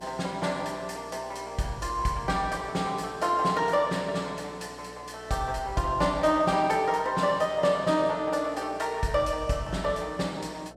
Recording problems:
hum; 60 Hz, harmonics up to 720 Hz, SNR 23 dB

